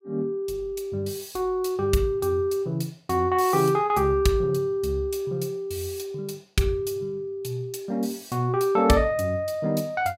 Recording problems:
none

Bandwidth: 16 kHz